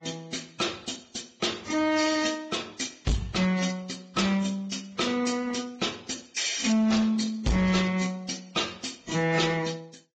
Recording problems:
lossy compression; AAC, then Vorbis, log-spectral distance 6 dB, nothing above 7.6 kHz
distorted audio; hard clipping, signal-to-distortion ratio 6 dB

